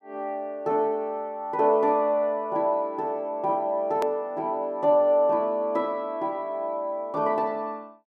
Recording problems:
hard cut with a click; at 4 s

